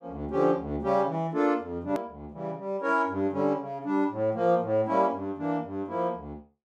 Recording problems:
click at an edit; at 2 s

